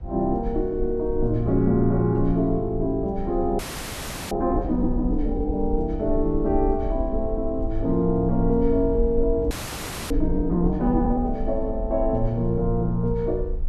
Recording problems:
low-frequency rumble; below 54 Hz, strongest tone 24 Hz, SNR 8 dB
frozen audio; at 3.5 s for 0.5 s and at 9.5 s for 0.5 s

